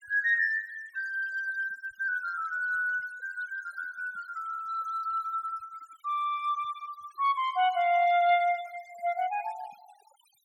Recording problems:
noise reduction artefacts; signal-to-artefact ratio 22 dB

